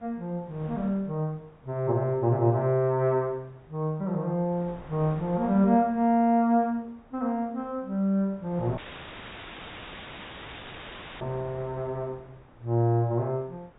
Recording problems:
treble missing; nothing above 4 kHz
wind noise; below 930 Hz, SNR 23 dB
audio cutting out; at 9 s for 2.5 s; filled with static

